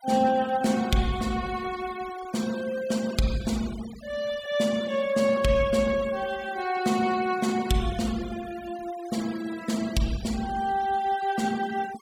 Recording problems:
denoising artefacts; signal-to-artefact ratio 18 dB

